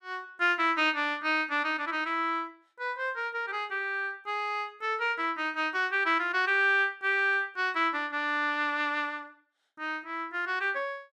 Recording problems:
none

